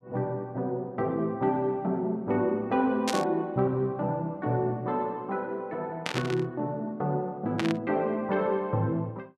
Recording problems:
burst of static; at 3 s, at 6 s and at 7.5 s; peak +3 dB vs average level

